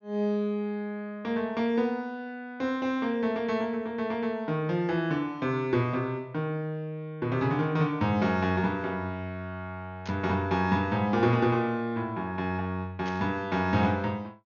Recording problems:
treble missing; nothing above 6.8 kHz
static burst; at 10 s and at 13 s; peak -10 dB vs average level

